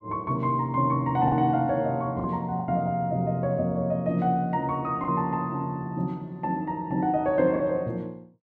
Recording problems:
lost packets; 3% of the sound replaced, filled with the last packet

